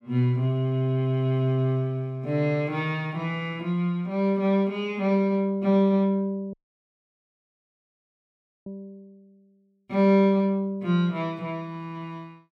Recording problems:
dropout; at 6.5 s for 2 s

